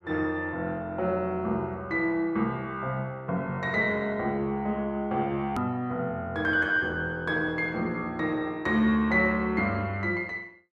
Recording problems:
edit click; at 5.5 s

